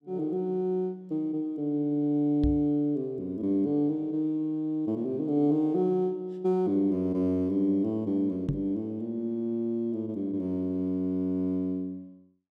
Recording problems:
microphone bump; at 2.5 s and at 8.5 s; peak +2 dB vs average level

